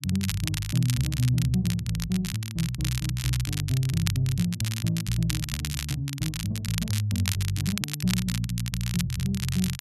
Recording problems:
crackling; vinyl, SNR 7 dB

